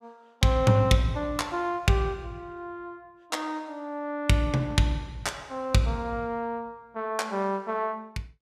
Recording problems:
none

